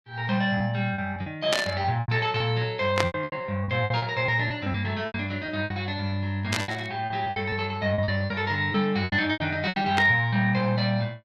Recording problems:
lost packets; 14% of the sound replaced, filled with repeated pitch periods
burst of static; 4 times, first at 1.5 s; peak +5 dB vs average level

